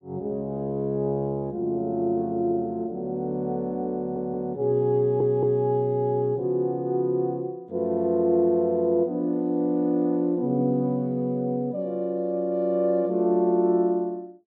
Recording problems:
stutter; at 4 s and at 5 s

